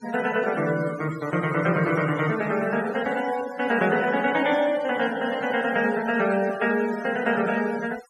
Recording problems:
noise reduction artefacts; signal-to-artefact ratio 16 dB

